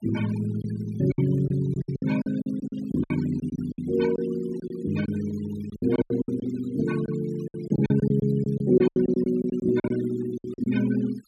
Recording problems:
denoising artefacts; signal-to-artefact ratio 19 dB
lost packets; 14% of the sound replaced, filled with silence

